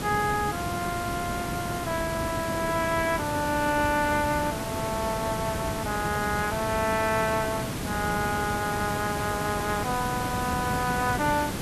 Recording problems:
background hiss; slope -4 dB per octave, SNR 4 dB

